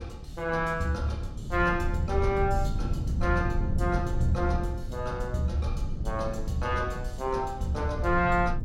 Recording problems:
wind noise; below 120 Hz, SNR 4 dB

